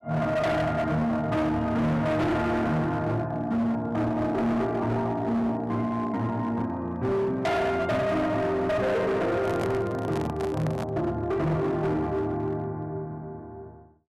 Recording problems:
distortion; hard clipping, signal-to-distortion ratio 7 dB
handling noise; from 9.5 to 11 s; peak -1 dB vs average level

